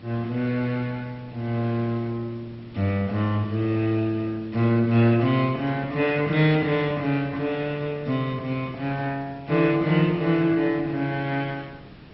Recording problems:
lossy codec; MP2, log-spectral distance 2 dB, nothing above 5.3 kHz
hiss; SNR 22 dB

